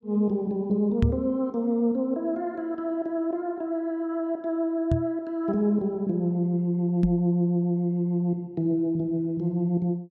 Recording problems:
knock on the microphone; at 1 s, at 5 s and at 7 s; peak +6 dB vs average level

